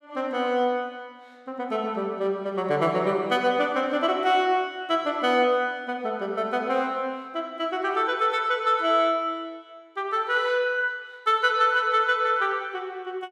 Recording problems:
none

